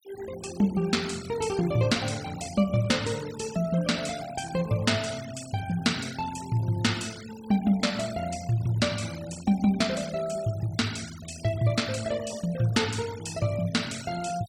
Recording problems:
noise reduction artefacts; signal-to-artefact ratio 16 dB

